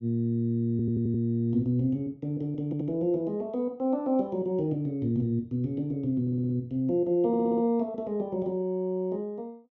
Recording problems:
audio stuttering; 4 times, first at 0.5 s

